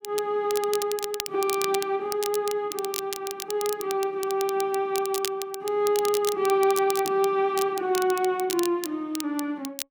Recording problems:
crackle; vinyl, SNR 9 dB

